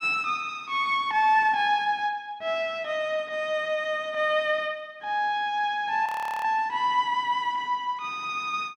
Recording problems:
audio freezing; at 6 s

